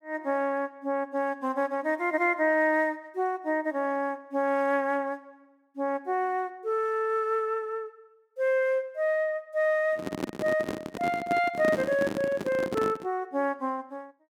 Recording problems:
microphone handling noise; from 10 to 13 s; peak +1 dB vs average level

